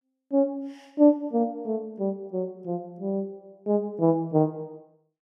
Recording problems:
none

